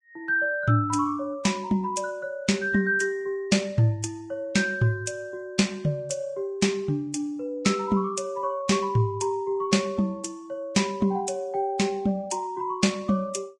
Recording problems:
lossy compression; Vorbis, log-spectral distance 2 dB

